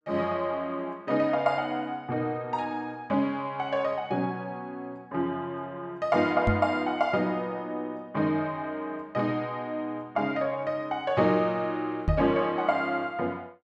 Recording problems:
knock on the microphone; at 6.5 s and at 12 s; peak +6 dB vs average level

